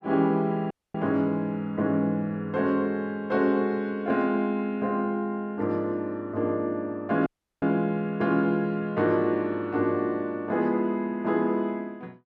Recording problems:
audio cutting out; at 0.5 s and at 7.5 s

